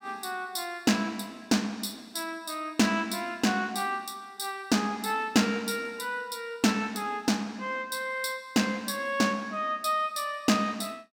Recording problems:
none

